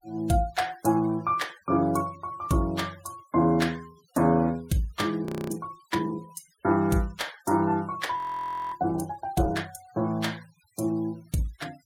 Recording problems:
noise reduction artefacts; signal-to-artefact ratio 24 dB
audio freezing; at 5.5 s and at 8 s for 0.5 s

